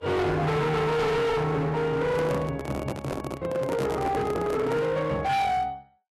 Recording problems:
lossy compression; Vorbis, log-spectral distance 2 dB, nothing above 13.1 kHz
distortion; hard clipping, signal-to-distortion ratio 7 dB
handling noise; from 2 to 5 s; peak -1 dB vs average level

